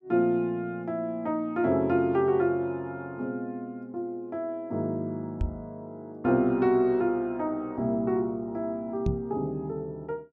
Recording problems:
microphone thump; at 5.5 s and at 9 s; peak +3 dB vs average level

